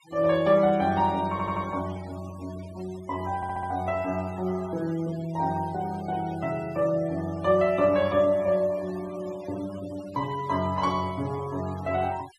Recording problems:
denoising artefacts; signal-to-artefact ratio 20 dB
audio stuttering; at 1.5 s and at 3.5 s

